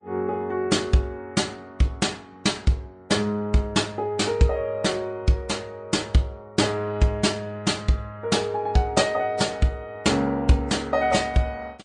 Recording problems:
lossy codec; AAC, then MP3, log-spectral distance 2 dB, nothing above 9 kHz

